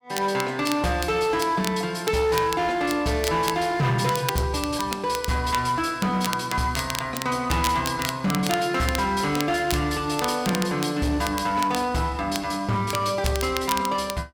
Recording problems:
distorted audio; hard clipping, signal-to-distortion ratio 11 dB
crackle; vinyl, SNR 10 dB

